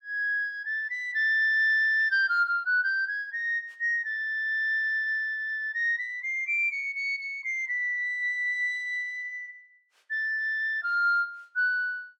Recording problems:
none

